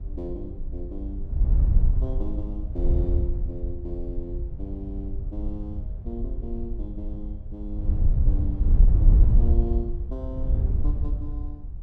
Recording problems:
wind on the microphone; below 70 Hz, SNR -11 dB

